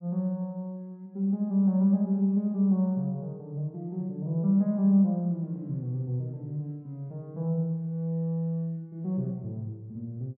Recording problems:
none

